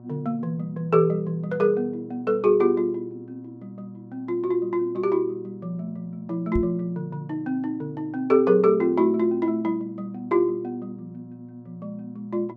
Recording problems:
electrical hum; 60 Hz, harmonics up to 960 Hz, SNR 21 dB
microphone thump; at 6.5 s; peak 0 dB vs average level

